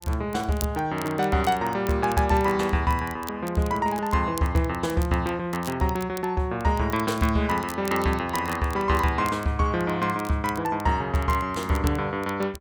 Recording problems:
crackling; vinyl, SNR 18 dB

